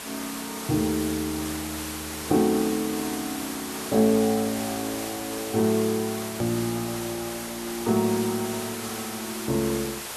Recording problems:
hiss; slope -1 dB per octave, SNR 7 dB
edit click; at 6.5 s

